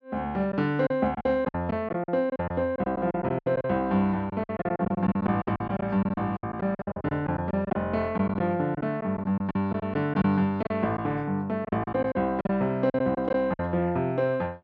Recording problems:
lost packets; 13% of the sound replaced, filled with silence

